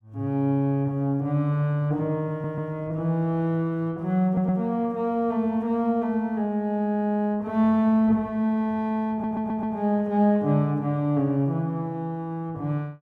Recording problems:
stutter; at 2.5 s, at 4.5 s and at 9 s

